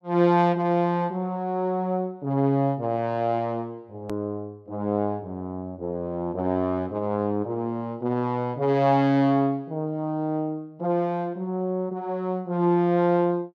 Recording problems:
edit click; at 4 s

